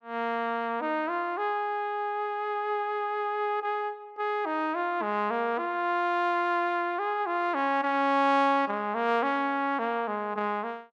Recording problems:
none

